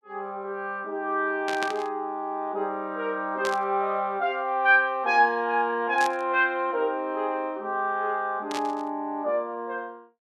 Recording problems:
burst of static; 4 times, first at 1.5 s; peak -2 dB vs average level

